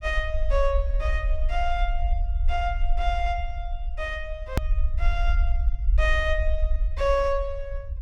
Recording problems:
low-frequency rumble; below 54 Hz, SNR -1 dB
edit click; at 4.5 s

